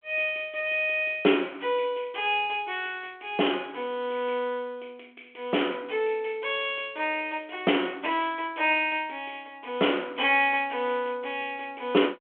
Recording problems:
phone line; 260 Hz to 3.4 kHz, G.726

